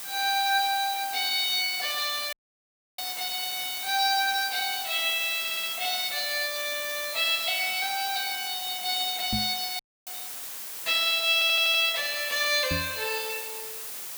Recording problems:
background hiss; slope 0 dB per octave, SNR 8 dB
audio cutting out; at 2.5 s for 0.5 s and at 10 s
audio stuttering; at 5.5 s and at 11 s
crackling; at 7 s and from 9 to 13 s; loose cable, SNR 28 dB
microphone thump; at 9.5 s and at 13 s; peak -2 dB vs average level

